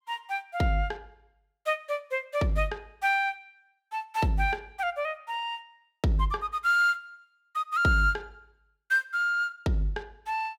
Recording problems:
none

